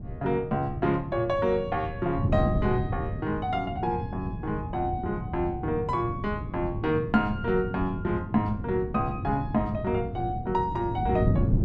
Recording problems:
wind on the microphone; below 200 Hz, SNR 5 dB

